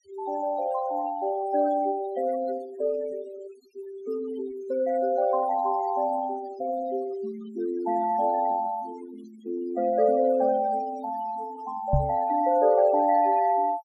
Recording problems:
denoising artefacts; signal-to-artefact ratio 18 dB
microphone thump; at 12 s; peak +5 dB vs average level

